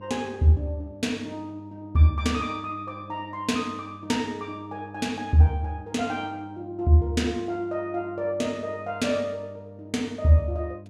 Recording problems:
electrical hum; 50 Hz, harmonics up to 700 Hz, SNR 19 dB

